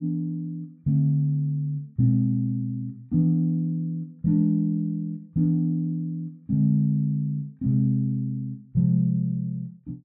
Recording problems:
none

